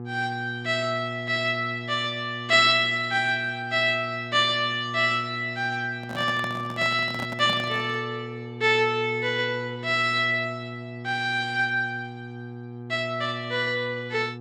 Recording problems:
hum; 60 Hz, harmonics up to 1.2 kHz, SNR 13 dB
handling noise; from 6 to 8 s; peak -5 dB vs average level

